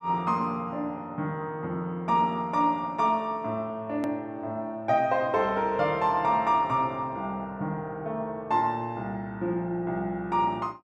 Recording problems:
click at an edit; at 4 s

